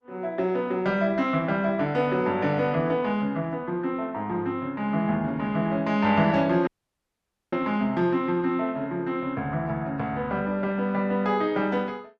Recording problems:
codec artefacts; Opus, log-spectral distance 2 dB
audio cutting out; at 6.5 s for 1 s

